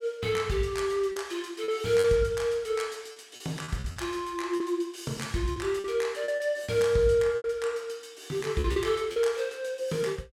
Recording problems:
lost packets; 7% of the sound replaced, filled with repeated pitch periods

